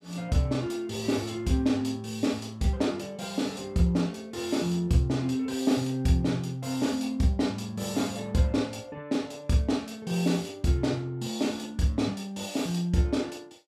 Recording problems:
none

